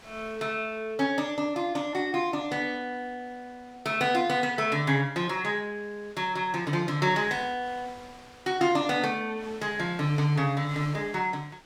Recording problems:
wind noise; below 4 kHz, SNR 23 dB

